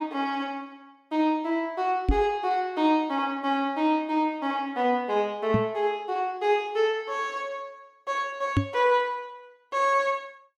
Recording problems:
knock on the microphone; at 2 s, at 5.5 s and at 8.5 s; peak +7 dB vs average level

